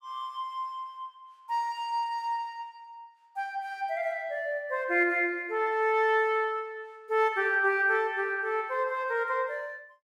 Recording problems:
none

